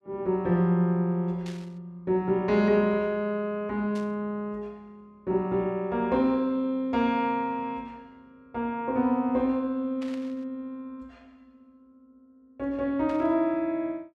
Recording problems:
static burst; 4 times, first at 1.5 s; peak -14 dB vs average level

